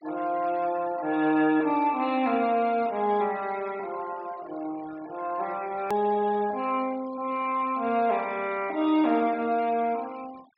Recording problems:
treble cut off; nothing above 5.2 kHz
denoising artefacts; signal-to-artefact ratio 23 dB
click at an edit; at 6 s

